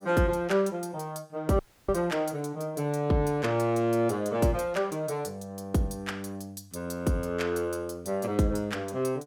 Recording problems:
audio cutting out; at 1.5 s

